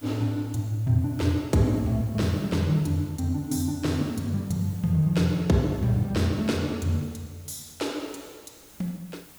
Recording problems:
hiss; slope -2 dB per octave, SNR 25 dB

